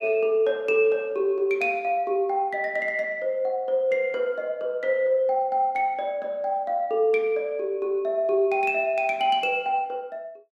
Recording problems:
none

